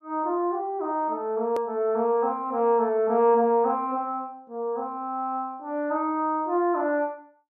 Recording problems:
edit click; at 1.5 s

